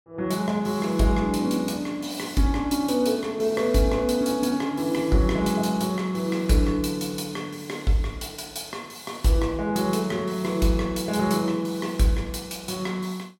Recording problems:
none

